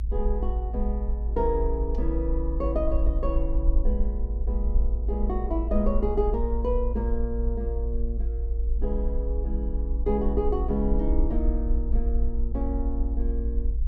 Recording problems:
rumble; below 54 Hz, SNR -2 dB

